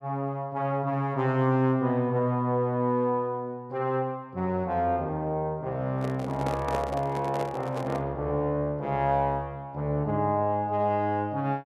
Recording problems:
microphone handling noise; from 6 to 8 s; peak -2 dB vs average level

